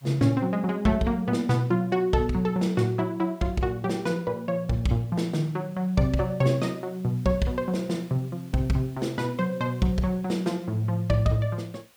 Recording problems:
background hiss; slope -1 dB per octave, SNR 29 dB

